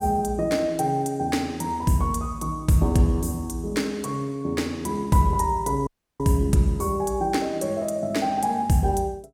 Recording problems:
audio cutting out; at 6 s

